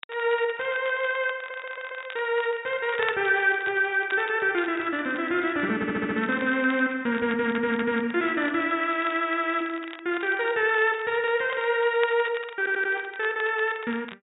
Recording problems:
low-pass filter; nothing above 4 kHz
crackle; vinyl, SNR 18 dB
audio stuttering; 4 times, first at 1.5 s

